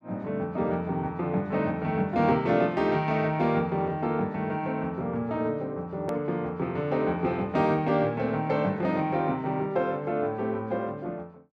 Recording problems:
click at an edit; at 6 s

